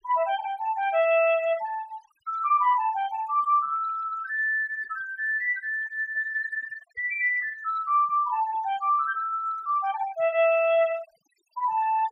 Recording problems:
denoising artefacts; signal-to-artefact ratio 22 dB

